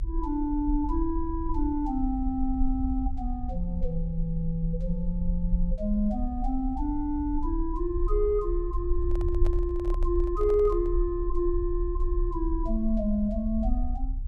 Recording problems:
rumble; below 50 Hz, strongest tone 32 Hz, SNR 3 dB
handling noise; from 9 to 11 s; peak -8 dB vs average level

